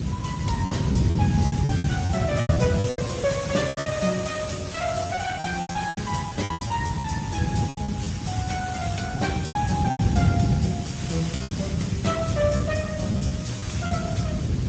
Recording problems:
lossy compression; Opus, then Speex, log-spectral distance 6 dB, nothing above 7.8 kHz
background hiss; slope 0 dB per octave, SNR 10 dB
rumble; below 190 Hz, SNR -2 dB
wind noise; below 410 Hz, SNR 18 dB
lost packets; 13% of the sound replaced, filled with repeated pitch periods

